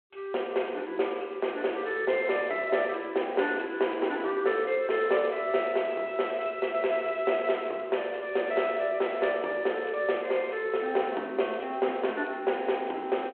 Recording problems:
phone line; 300 Hz to 3.3 kHz, G.726

